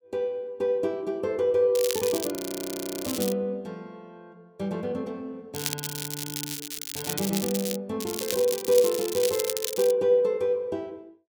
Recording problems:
crackling; from 2 to 3.5 s, from 5.5 to 8 s and from 8 to 10 s; loose cable, SNR 6 dB
audio freezing; at 2.5 s for 0.5 s

